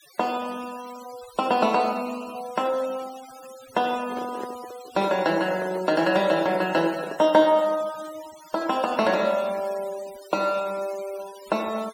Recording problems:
noise reduction artefacts; signal-to-artefact ratio 19 dB
handling noise; from 4 to 7.5 s; peak -4 dB vs average level

